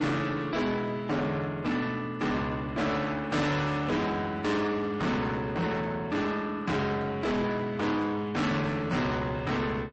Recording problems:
codec artefacts; MP3, log-spectral distance 2 dB, nothing above 8 kHz
distorted audio; soft clipping, signal-to-distortion ratio 6 dB

